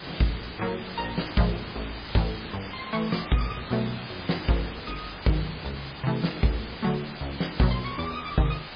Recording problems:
lossy compression; MP3, log-spectral distance 21 dB, nothing above 5 kHz
background hiss; SNR 9 dB

